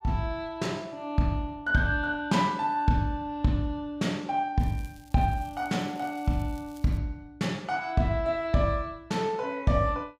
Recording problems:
crackling; from 4.5 to 7 s; loose cable, SNR 27 dB

